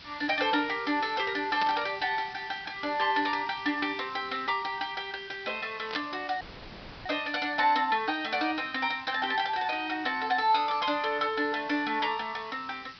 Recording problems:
treble missing; nothing above 5.5 kHz
hiss; SNR 19 dB
burst of static; at 1.5 s and at 6 s; peak -1 dB vs average level
audio cutting out; at 6.5 s for 0.5 s

